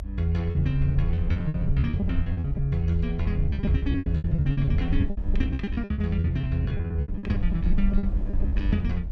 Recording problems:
rumble; below 74 Hz, SNR 2 dB
packet loss; 20% of the sound replaced, filled with repeated pitch periods

